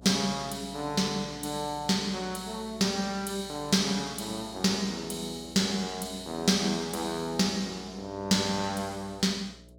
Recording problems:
hum; 60 Hz, harmonics up to 660 Hz, SNR 23 dB

